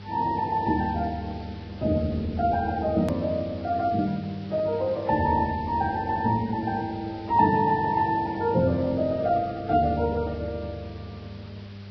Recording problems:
codec artefacts; AAC, then Vorbis, log-spectral distance 5 dB, nothing above 13.1 kHz
hum; 50 Hz, harmonics up to 500 Hz, SNR 17 dB
background hiss; SNR 23 dB
click at an edit; at 3 s

